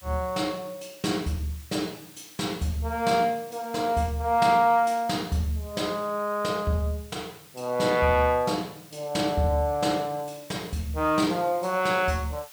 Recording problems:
background hiss; slope +2 dB per octave, SNR 21 dB

